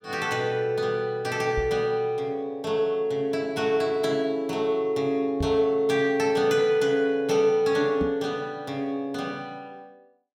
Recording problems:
knock on the microphone; at 1.5 s, at 5.5 s and at 8 s; peak -1 dB vs average level

